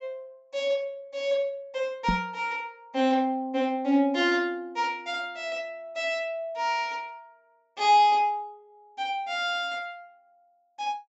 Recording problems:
low-pass filter; nothing above 7.6 kHz
knock on the microphone; at 2 s; peak +3 dB vs average level

